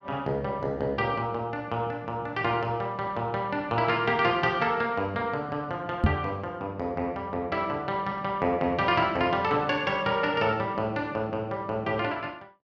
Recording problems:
knock on the microphone; at 6 s; peak +9 dB vs average level

